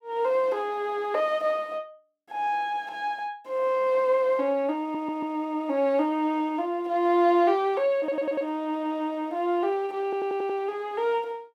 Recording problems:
stutter; at 5 s, at 8 s and at 10 s

